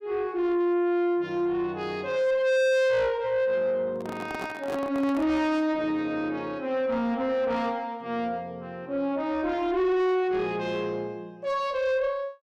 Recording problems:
distortion; soft clipping, signal-to-distortion ratio 6 dB
handling noise; from 4 to 5.5 s; peak -5 dB vs average level

